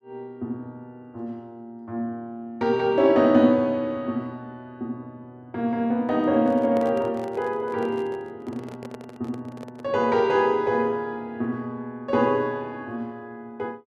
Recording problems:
handling noise; from 6 to 10 s; peak -5 dB vs average level

